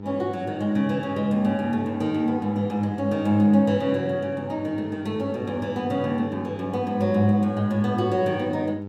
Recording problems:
hum; 50 Hz, harmonics up to 1 kHz, SNR 13 dB

